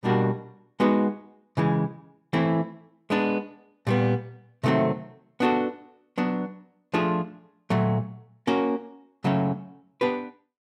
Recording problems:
none

